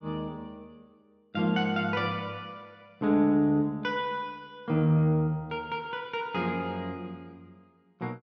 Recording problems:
none

